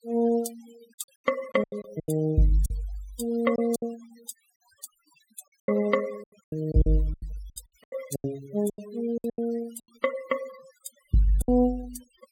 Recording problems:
noise reduction artefacts; signal-to-artefact ratio 18 dB
lost packets; 13% of the sound replaced, filled with silence

